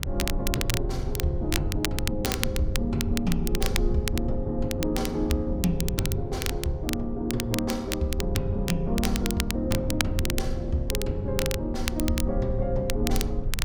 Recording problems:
low-frequency rumble; below 80 Hz, SNR 4 dB
crackling; vinyl, SNR 4 dB

